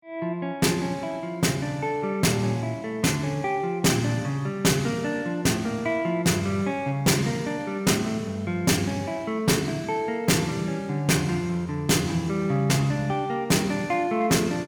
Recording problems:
distortion; hard clipping, uneven, signal-to-distortion ratio 7 dB

